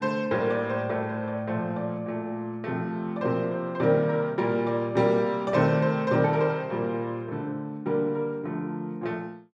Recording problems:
none

